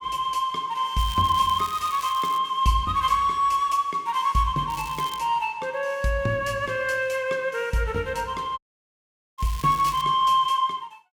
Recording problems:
crackle; from 1 to 2.5 s, at 4.5 s and at 9.5 s; loose cable, SNR 18 dB
dropout; at 8.5 s for 1 s

